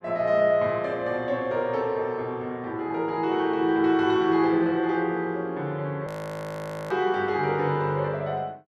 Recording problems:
audio freezing; at 6 s for 1 s

